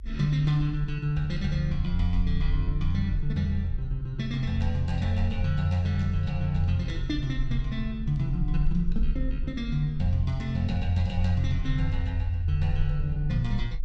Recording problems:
rumble; below 50 Hz, SNR 7 dB

